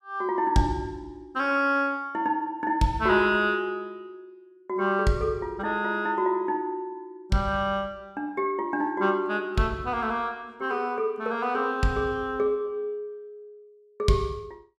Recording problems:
none

